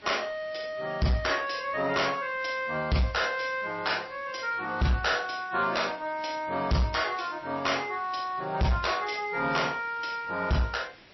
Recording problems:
codec artefacts; MP3, log-spectral distance 6 dB, nothing above 5.7 kHz
distorted audio; soft clipping, signal-to-distortion ratio 8 dB
hiss; slope -2 dB per octave, SNR 23 dB

